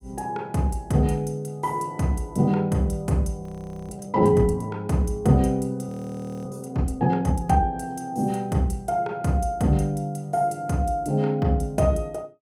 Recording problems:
audio freezing; at 3.5 s and at 6 s for 0.5 s

